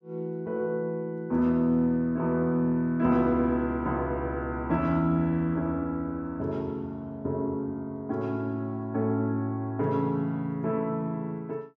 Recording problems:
none

